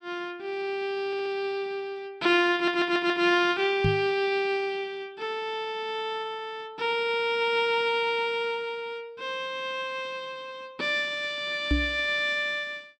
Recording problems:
stutter; at 1 s and at 2.5 s
knock on the microphone; at 4 s and at 12 s; peak +5 dB vs average level

